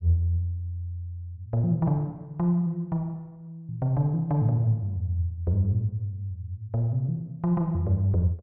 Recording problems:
none

